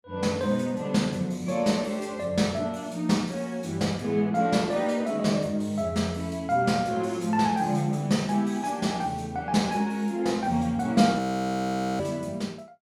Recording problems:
audio freezing; at 11 s for 1 s

